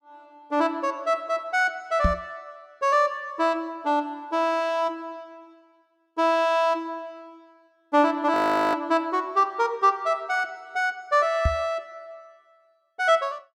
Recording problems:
knock on the microphone; at 2 s and at 11 s; peak +4 dB vs average level
frozen audio; at 8.5 s

